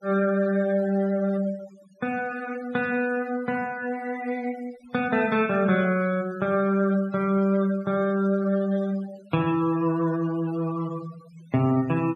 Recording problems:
noise reduction artefacts; signal-to-artefact ratio 22 dB

